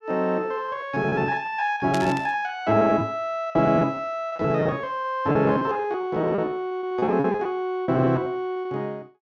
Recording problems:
packet loss; 18% of the sound replaced, filled with repeated pitch periods
static burst; at 2 s; peak -4 dB vs average level

